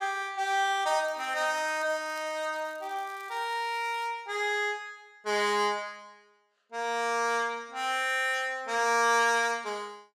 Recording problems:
crackle; from 1 to 4 s and at 8 s; loose cable, SNR 28 dB

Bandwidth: 15.5 kHz